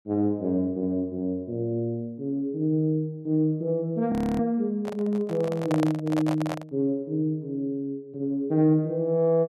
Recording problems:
audio freezing; at 4 s
microphone handling noise; from 5 to 6.5 s; peak -1 dB vs average level

